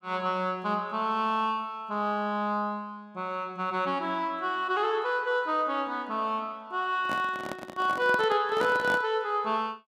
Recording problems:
handling noise; from 7 to 9 s; peak -2 dB vs average level

